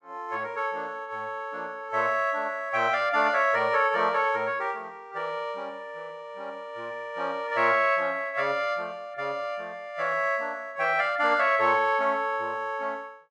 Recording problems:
none

